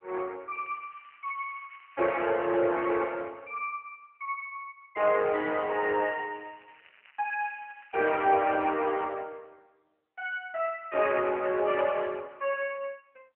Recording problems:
telephone audio; 280 Hz to 3 kHz, AMR-NB
crackling; from 0.5 to 2.5 s and from 6 to 8.5 s; loose cable, SNR 27 dB

